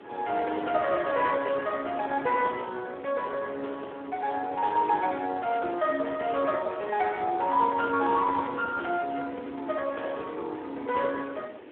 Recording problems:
phone line; 280 Hz to 2.5 kHz, Speex
hiss; SNR 20 dB

